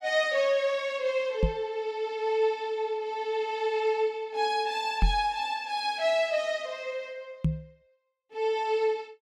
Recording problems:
microphone thump; at 1.5 s, at 5 s and at 7.5 s; peak +6 dB vs average level

